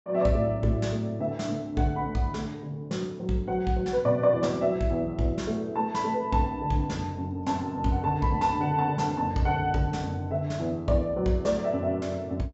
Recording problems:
low-pass filter; nothing above 7.8 kHz

